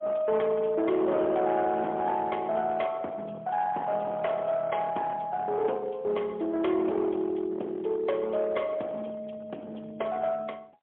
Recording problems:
phone line; 260 Hz to 3.3 kHz, AMR-NB, then MP3
distortion; hard clipping, uneven, signal-to-distortion ratio 11 dB

